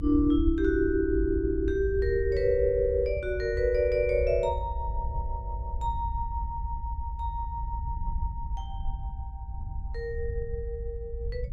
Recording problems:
rumble; below 70 Hz, SNR 6 dB

